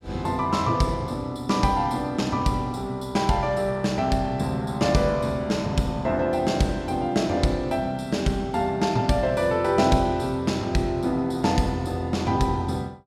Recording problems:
none

